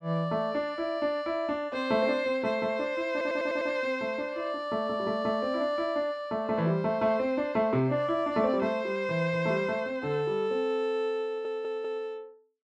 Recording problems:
stutter; at 3 s and at 11 s

